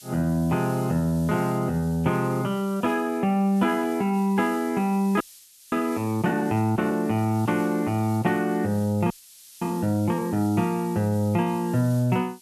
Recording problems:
hiss; SNR 21 dB
frozen audio; at 5 s for 0.5 s and at 9 s for 0.5 s

